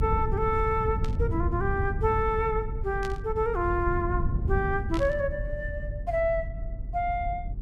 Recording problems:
rumble; below 110 Hz, SNR 4 dB
static burst; at 1 s, at 3 s and at 5 s; peak -8 dB vs average level

